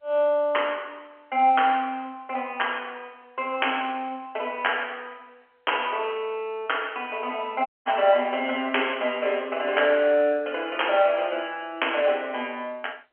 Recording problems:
phone line; 220 Hz to 3.3 kHz, G.711
audio cutting out; at 7.5 s

